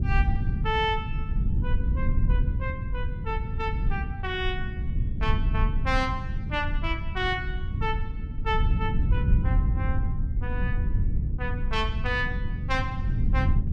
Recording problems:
rumble; below 100 Hz, SNR -3 dB

